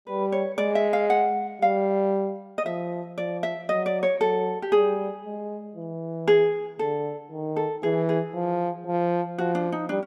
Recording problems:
none

